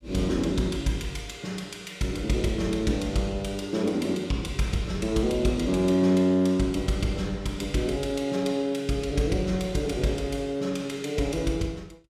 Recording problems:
none

